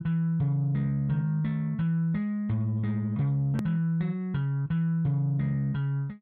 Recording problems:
click at an edit; at 3.5 s

